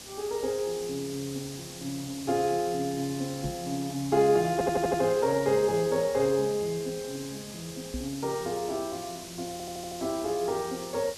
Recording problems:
background hiss; SNR 12 dB
microphone bump; at 3.5 s and at 8 s; peak -1 dB vs average level
stutter; at 4.5 s and at 9.5 s

